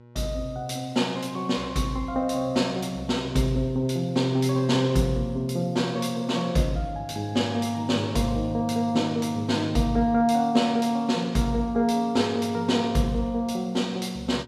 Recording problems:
hum; 60 Hz, harmonics up to 1.1 kHz, SNR 25 dB

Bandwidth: 14.5 kHz